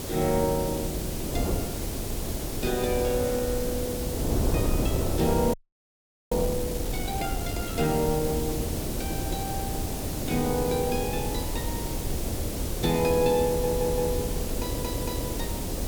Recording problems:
background hiss; slope +1 dB per octave, SNR 6 dB
wind on the microphone; below 360 Hz, SNR 2 dB
audio freezing; at 5.5 s for 1 s
stutter; at 13 s and at 15 s

